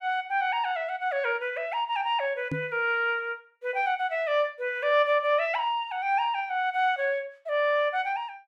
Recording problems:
microphone bump; at 2.5 s; peak -1 dB vs average level

